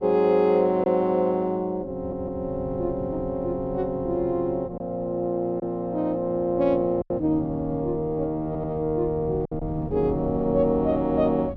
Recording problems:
wind noise; below 200 Hz, SNR 15 dB
lost packets; 2% of the sound replaced, filled with silence
stutter; at 2 s and at 8.5 s

